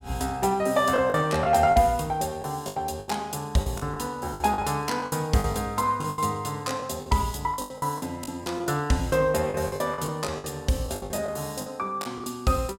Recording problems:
packet loss; 13% of the sound replaced, filled with the last packet

